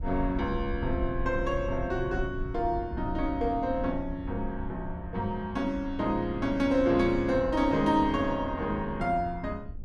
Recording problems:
rumble; below 82 Hz, SNR 10 dB

